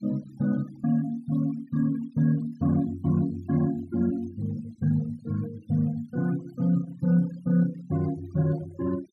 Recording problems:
noise reduction artefacts; signal-to-artefact ratio 23 dB

